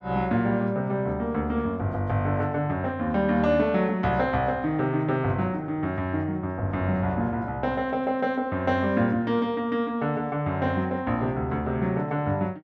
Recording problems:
none

